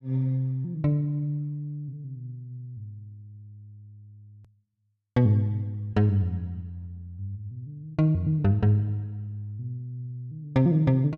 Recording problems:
click at an edit; at 4.5 s

